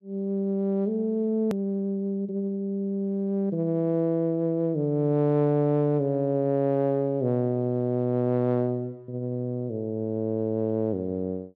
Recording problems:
treble missing; nothing above 8 kHz
click at an edit; at 1.5 s

